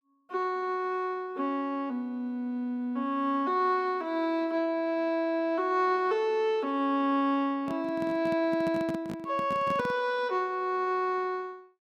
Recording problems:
handling noise; from 7.5 to 10 s; peak -4 dB vs average level

